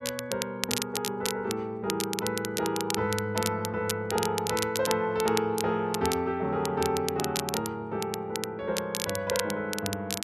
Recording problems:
crackle; vinyl, SNR 5 dB

